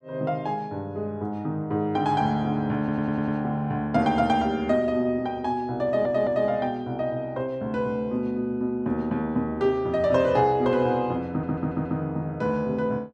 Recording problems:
stutter; at 3 s, at 6 s and at 11 s

